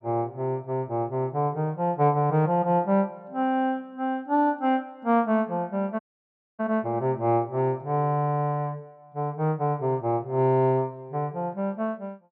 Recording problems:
audio cutting out; at 6 s for 0.5 s

